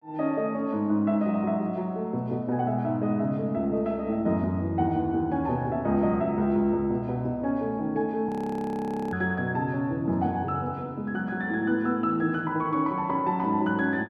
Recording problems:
frozen audio; at 8.5 s for 1 s

